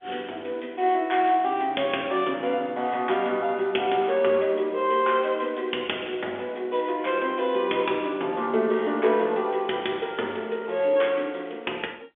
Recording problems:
telephone audio; 260 Hz to 3.5 kHz, G.711

